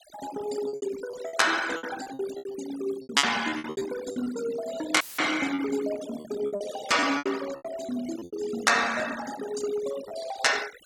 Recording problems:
denoising artefacts; signal-to-artefact ratio 13 dB
packet loss; 13% of the sound replaced, filled with repeated pitch periods
audio cutting out; at 5 s; filled with static

